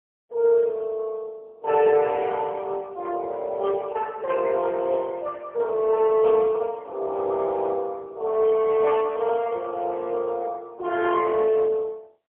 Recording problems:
telephone audio; 300 Hz to 3.5 kHz, AMR-NB, then MP3

